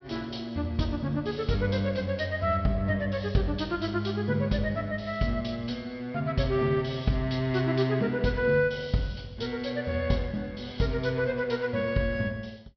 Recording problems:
treble cut off; nothing above 5.5 kHz

